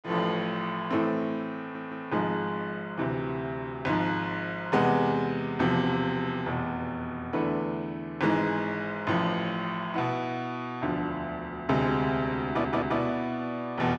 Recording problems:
audio stuttering; at 1.5 s and at 12 s

